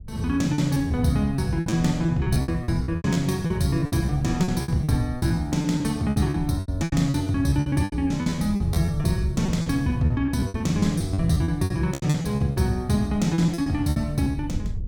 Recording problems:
rumble; below 100 Hz, SNR 14 dB
packet loss; 17% of the sound replaced, filled with repeated pitch periods

